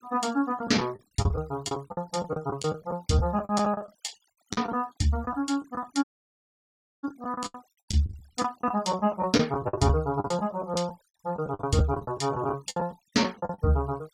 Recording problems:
denoising artefacts; signal-to-artefact ratio 25 dB
packet loss; 15% of the sound replaced, filled with the last packet
audio cutting out; at 6 s for 1 s

